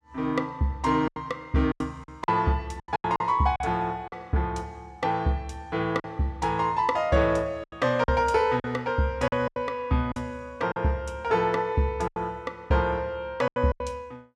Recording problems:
packet loss; 8% of the sound replaced, filled with silence

